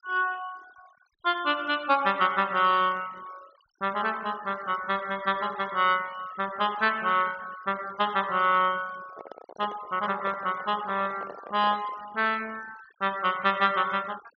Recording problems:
low-pass filter; nothing above 6.3 kHz
denoising artefacts; signal-to-artefact ratio 21 dB
handling noise; from 9 to 12 s; peak -11 dB vs average level

